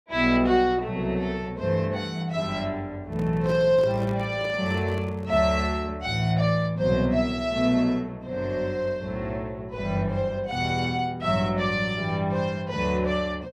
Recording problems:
handling noise; from 3 to 5.5 s; peak -9 dB vs average level

